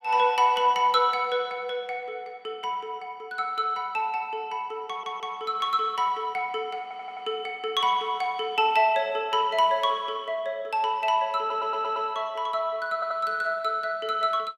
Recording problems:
audio stuttering; 4 times, first at 5 s

